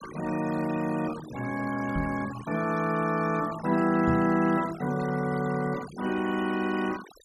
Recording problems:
denoising artefacts; signal-to-artefact ratio 15 dB
microphone thump; at 2 s and at 4 s; peak 0 dB vs average level

